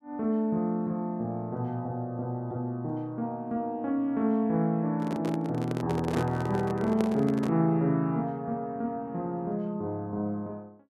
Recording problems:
handling noise; from 5 to 7.5 s; peak +1 dB vs average level

